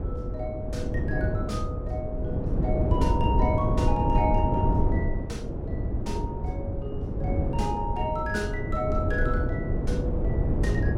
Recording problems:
wind noise; below 230 Hz, SNR -4 dB

